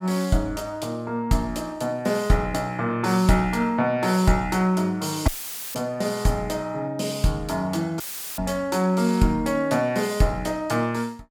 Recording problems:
audio cutting out; at 5.5 s and at 8 s; filled with static

